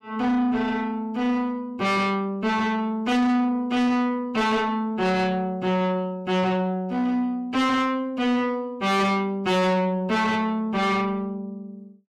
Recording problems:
distorted audio; soft clipping, signal-to-distortion ratio 7 dB

